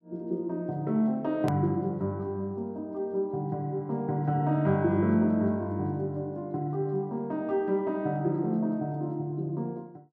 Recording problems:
hard cut with a click; at 1.5 s

